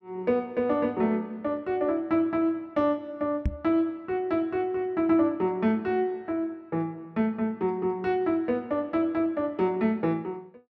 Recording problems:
knock on the microphone; at 3.5 s; peak +3 dB vs average level

